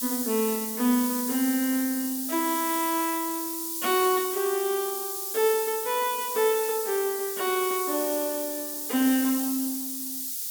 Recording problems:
background hiss; SNR 3 dB

